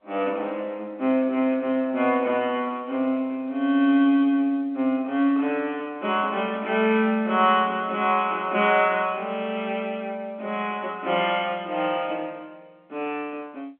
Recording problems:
telephone audio; 240 Hz to 3.4 kHz, G.711

